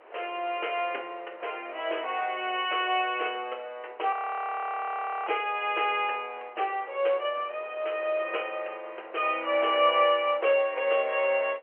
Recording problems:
telephone audio; 340 Hz to 3.1 kHz, G.711
wind on the microphone; below 1.3 kHz, SNR 23 dB
frozen audio; at 4 s for 1 s

